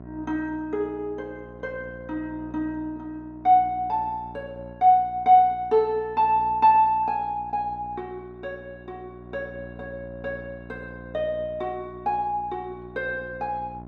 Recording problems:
hum; 60 Hz, harmonics up to 1.1 kHz, SNR 20 dB

